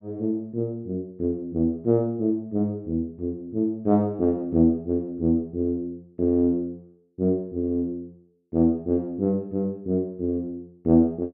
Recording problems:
none

